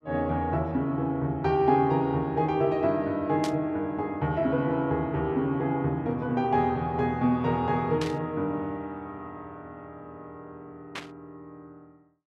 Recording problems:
static burst; at 3.5 s, at 8 s and at 11 s; peak -5 dB vs average level

